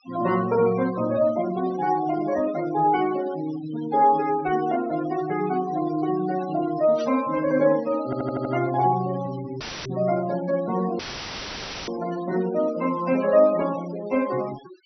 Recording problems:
treble missing; nothing above 5.9 kHz
noise reduction artefacts; signal-to-artefact ratio 15 dB
burst of static; at 7 s; peak -14 dB vs average level
audio stuttering; at 8 s
audio cutting out; at 9.5 s and at 11 s for 1 s; filled with static

